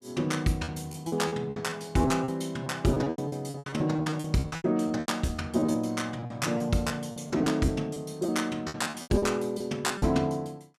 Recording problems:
packet loss; 16% of the sound replaced, filled with repeated pitch periods

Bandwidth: 14.5 kHz